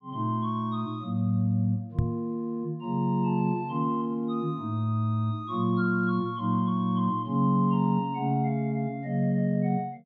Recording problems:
microphone thump; at 2 s; peak +5 dB vs average level

